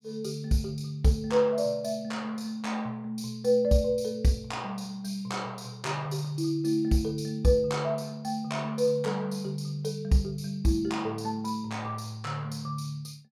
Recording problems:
none

